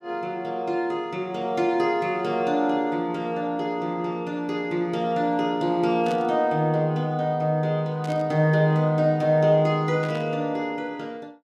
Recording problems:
static burst; at 6 s, at 8 s and at 10 s; peak -12 dB vs average level

